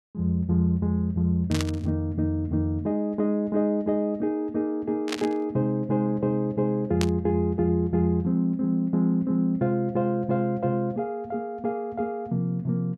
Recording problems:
static burst; at 1.5 s, at 5 s and at 7 s; peak 0 dB vs average level

